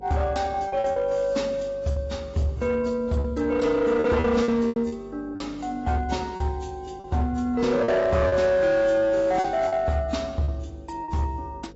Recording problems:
lossy compression; AAC, log-spectral distance 2 dB, nothing above 7.6 kHz
distortion; hard clipping, uneven, signal-to-distortion ratio 12 dB
hum; 50 Hz, harmonics up to 550 Hz, SNR 23 dB
packet loss; 7% of the sound replaced, filled with repeated pitch periods

